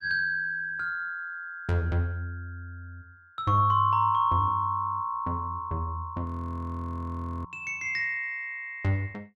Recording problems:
frozen audio; at 6.5 s for 1 s

